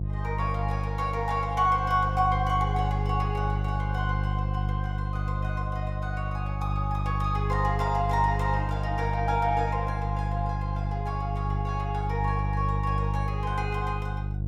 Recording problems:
mains hum; 50 Hz, harmonics up to 350 Hz, SNR 0 dB

